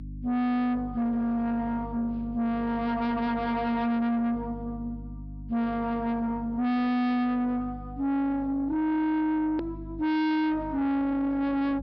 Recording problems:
low-pass filter; nothing above 5.5 kHz
distorted audio; soft clipping, signal-to-distortion ratio 6 dB
electrical hum; 50 Hz, harmonics up to 650 Hz, SNR 15 dB
edit click; at 9.5 s

